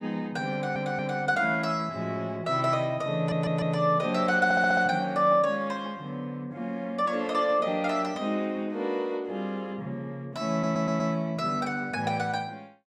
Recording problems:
audio stuttering; 4 times, first at 0.5 s

